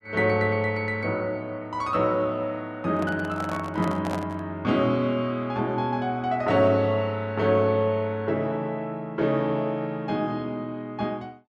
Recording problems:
handling noise; from 3 to 4.5 s; peak -3 dB vs average level

